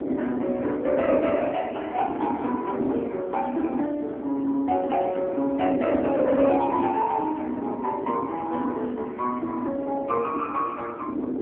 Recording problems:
telephone audio; 220 Hz to 3.3 kHz, AMR-NB
wind noise; below 380 Hz, SNR 5 dB

